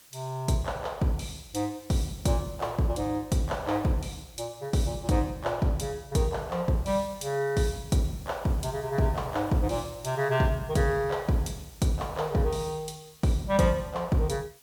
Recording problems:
hiss; slope +1 dB per octave, SNR 24 dB

